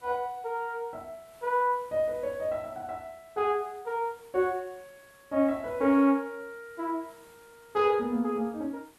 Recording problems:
hiss; slope -3 dB per octave, SNR 29 dB

